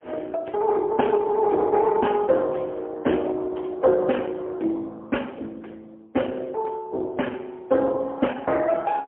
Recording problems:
telephone audio; 260 Hz to 3.3 kHz, AMR-NB, then MP3

